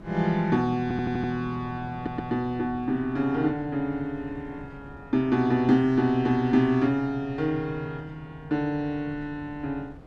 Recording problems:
wind noise; below 300 Hz, SNR 20 dB
stutter; at 1 s and at 2 s

